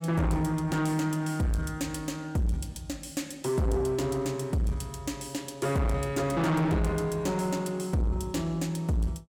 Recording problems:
distorted audio; soft clipping, signal-to-distortion ratio 7 dB

